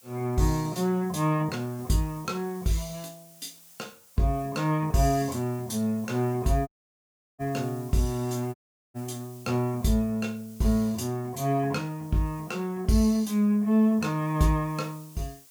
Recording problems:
background hiss; slope +1 dB per octave, SNR 23 dB
dropout; at 6.5 s for 0.5 s and at 8.5 s

